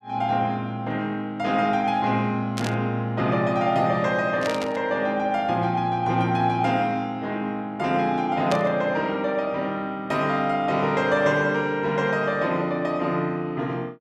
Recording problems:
static burst; at 2.5 s, at 4.5 s and at 8.5 s; peak -3 dB vs average level

